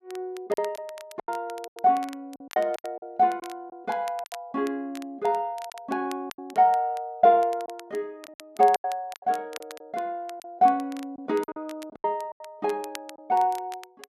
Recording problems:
crackling; vinyl, SNR 21 dB
lost packets; 10% of the sound replaced, filled with silence

